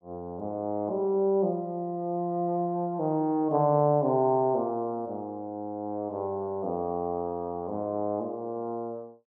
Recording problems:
none

